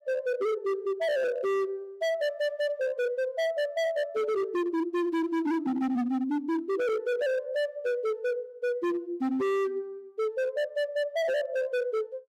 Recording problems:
distorted audio; hard clipping, signal-to-distortion ratio 6 dB

